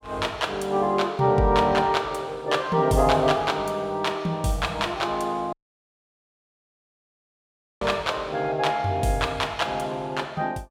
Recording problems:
dropout; at 5.5 s for 2.5 s

